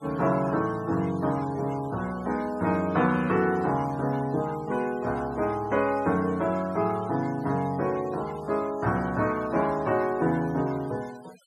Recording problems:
noise reduction artefacts; signal-to-artefact ratio 22 dB

